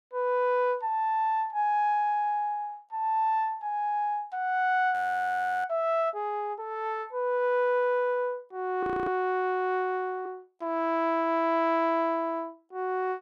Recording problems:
audio freezing; at 5 s for 0.5 s and at 9 s

